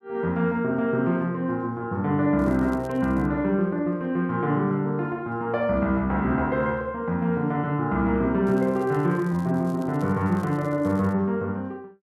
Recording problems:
crackling; at 2.5 s and from 8.5 to 11 s; loose cable, SNR 30 dB

